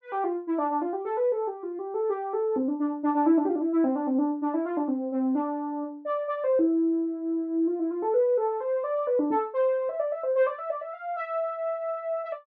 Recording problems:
none

